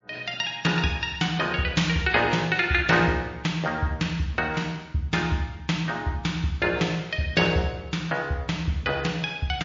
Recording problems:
codec artefacts; MP3, log-spectral distance 2 dB, nothing above 6.7 kHz

